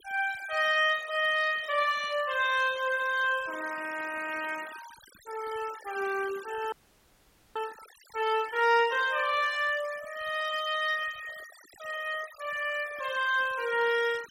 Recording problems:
noise reduction artefacts; signal-to-artefact ratio 18 dB
frozen audio; at 6.5 s for 1 s

